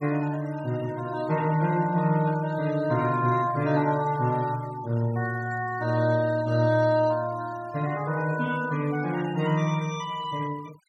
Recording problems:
noise reduction artefacts; signal-to-artefact ratio 20 dB

